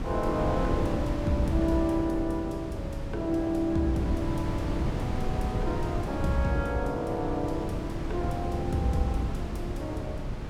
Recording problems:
electrical hum; 50 Hz, harmonics up to 400 Hz, SNR 17 dB
wind noise; below 250 Hz, SNR 2 dB

